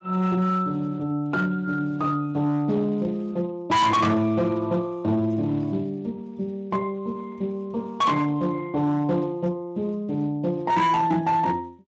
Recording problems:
lossy compression; Speex, log-spectral distance 2 dB, nothing above 7.6 kHz
distortion; hard clipping, signal-to-distortion ratio 8 dB

